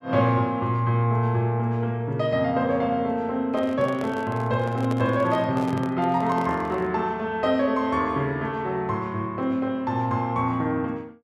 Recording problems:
microphone handling noise; from 3.5 to 7 s; peak -5 dB vs average level

